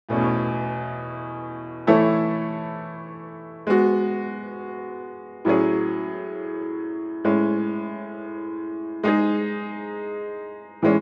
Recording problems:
none

